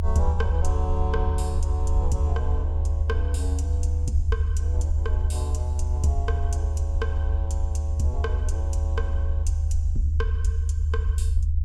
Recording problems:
low-frequency rumble; below 78 Hz, strongest tone 76 Hz, SNR -7 dB

